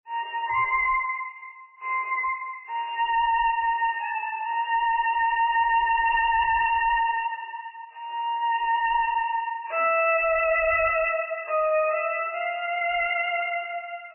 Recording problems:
lossy compression; MP3, log-spectral distance 4 dB, nothing above 2.8 kHz
distorted audio; hard clipping, uneven, signal-to-distortion ratio 9 dB

